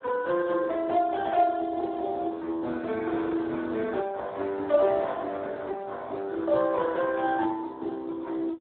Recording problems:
telephone audio; 220 Hz to 2 kHz, Speex

